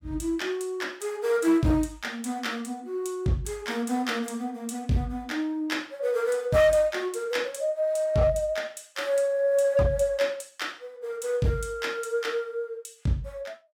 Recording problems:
distorted audio; hard clipping, signal-to-distortion ratio 12 dB

